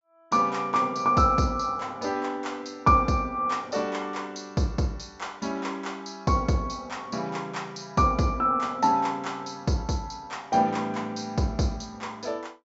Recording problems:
treble cut off; nothing above 8 kHz

